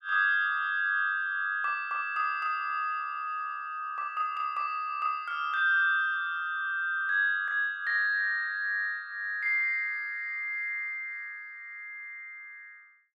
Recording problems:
none

